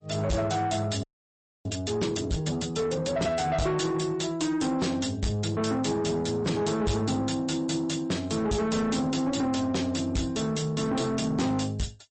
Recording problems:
lossy compression; MP3, log-spectral distance 4 dB, nothing above 8.2 kHz
distortion; soft clipping, signal-to-distortion ratio 7 dB
audio freezing; at 1 s for 0.5 s

